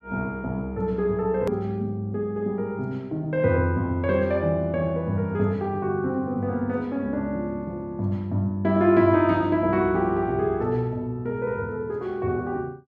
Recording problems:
edit click; at 1.5 s

